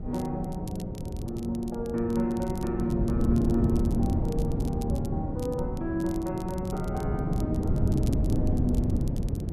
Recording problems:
wind on the microphone; below 220 Hz, SNR -2 dB
crackle; vinyl, SNR 20 dB

